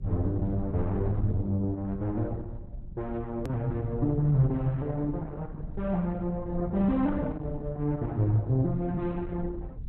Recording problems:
codec artefacts; Opus, log-spectral distance 2 dB, nothing above 13.1 kHz
rumble; below 110 Hz, SNR 11 dB
click at an edit; at 3.5 s

